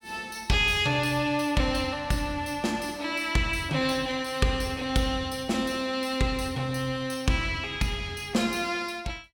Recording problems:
none

